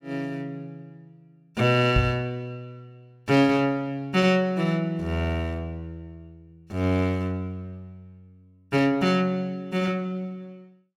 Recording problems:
microphone bump; at 2 s; peak +4 dB vs average level

